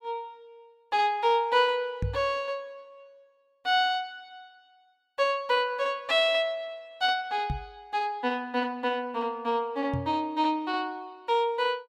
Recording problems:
microphone thump; at 2 s, at 7.5 s and at 10 s; peak +1 dB vs average level

